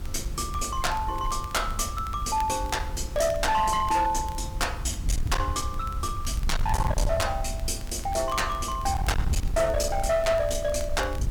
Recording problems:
distorted audio; hard clipping, uneven, signal-to-distortion ratio 7 dB
electrical hum; 50 Hz, harmonics up to 400 Hz, SNR 20 dB
background hiss; slope -3 dB per octave, SNR 21 dB
wind noise; below 86 Hz, SNR 6 dB
crackle; vinyl, SNR 23 dB

